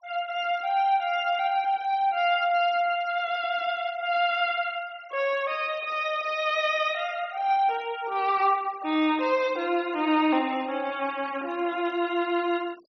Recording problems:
treble missing; nothing above 6.2 kHz
denoising artefacts; signal-to-artefact ratio 22 dB

